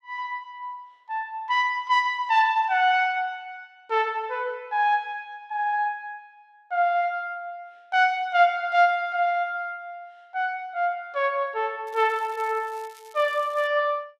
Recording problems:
crackle; from 12 to 14 s; loose cable, SNR 27 dB

